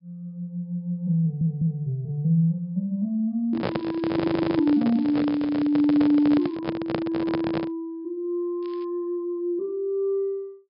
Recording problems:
treble cut off; nothing above 5.5 kHz
audio stuttering; at 1 s and at 4 s
handling noise; from 3.5 to 7.5 s; peak +2 dB vs average level
crackling; from 3.5 to 6.5 s and at 8.5 s; loose cable, SNR 28 dB

